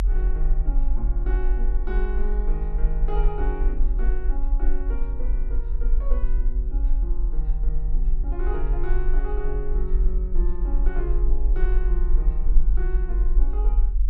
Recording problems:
hum; 50 Hz, harmonics up to 450 Hz, SNR 18 dB
low-frequency rumble; below 44 Hz, SNR -11 dB

